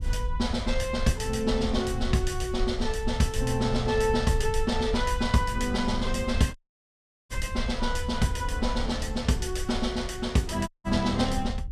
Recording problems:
low-frequency rumble; below 72 Hz, SNR 7 dB
audio cutting out; at 6.5 s for 0.5 s and at 11 s

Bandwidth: 14.5 kHz